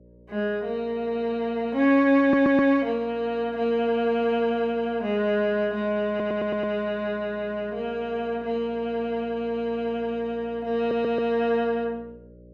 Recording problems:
electrical hum; 60 Hz, harmonics up to 600 Hz, SNR 26 dB
audio stuttering; at 2 s, at 6 s and at 11 s

